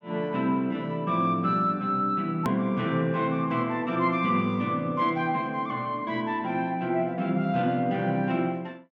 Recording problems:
treble missing; nothing above 8 kHz
edit click; at 2.5 s

